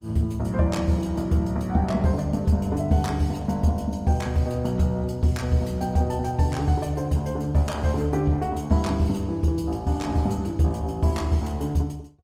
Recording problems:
lossy compression; Opus, log-spectral distance 2 dB

